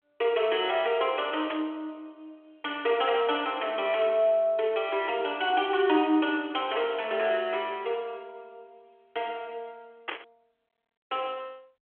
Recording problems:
telephone audio; 280 Hz to 3.4 kHz, G.726
burst of static; at 1.5 s and at 10 s; peak -1 dB vs average level

